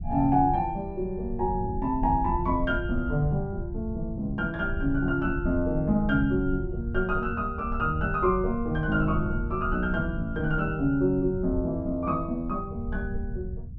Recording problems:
low-frequency rumble; below 90 Hz, SNR 8 dB

